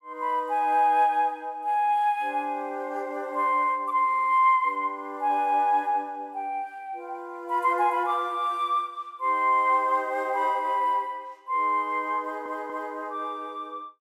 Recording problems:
audio stuttering; at 4 s and at 12 s

